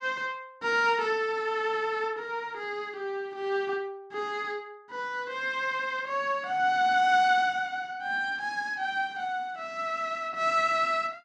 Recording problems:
none

